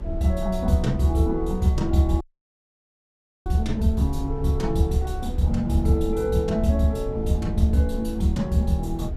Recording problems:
hum; 50 Hz, harmonics up to 450 Hz, SNR 24 dB
low-frequency rumble; below 72 Hz, SNR 9 dB
dropout; at 2 s for 1.5 s

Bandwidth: 15.5 kHz